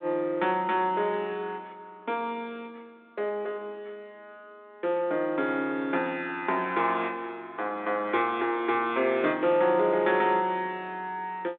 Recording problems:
telephone audio; 260 Hz to 3.7 kHz, G.726

